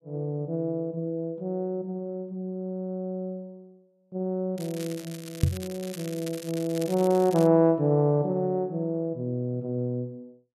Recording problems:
crackling; from 4.5 to 7.5 s; loose cable, SNR 15 dB
knock on the microphone; at 5.5 s; peak +9 dB vs average level

